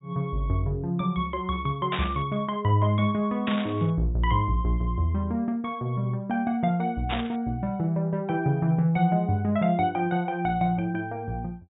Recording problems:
treble missing; nothing above 4 kHz
burst of static; at 2 s, at 3.5 s and at 7 s; peak -1 dB vs average level

